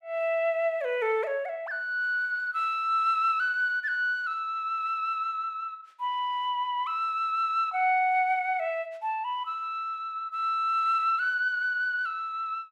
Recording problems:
none

